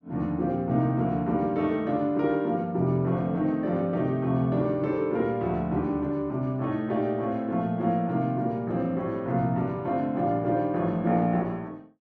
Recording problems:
none

